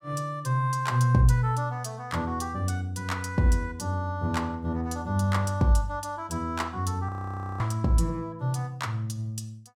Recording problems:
audio freezing; at 7 s for 0.5 s

